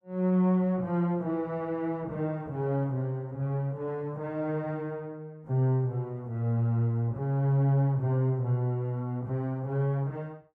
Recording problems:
none

